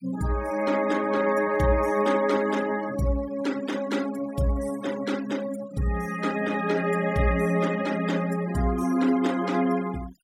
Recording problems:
noise reduction artefacts; signal-to-artefact ratio 17 dB

